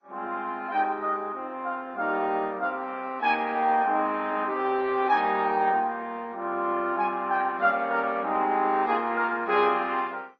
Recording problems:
lossy compression; MP2, then AAC, log-spectral distance 3 dB, nothing above 5.8 kHz

